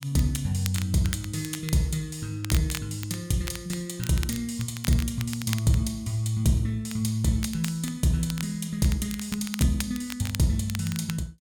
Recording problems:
crackling; vinyl, SNR 12 dB

